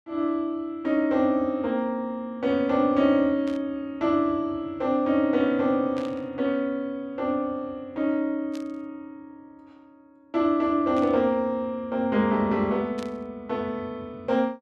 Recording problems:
static burst; 5 times, first at 3.5 s; peak -12 dB vs average level

